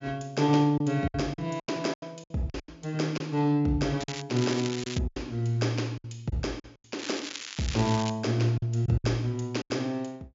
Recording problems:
treble cut off; nothing above 7.4 kHz
lost packets; 10% of the sound replaced, filled with silence
crackling; at 4 s, at 4.5 s and from 7 to 8 s; loose cable, SNR 9 dB

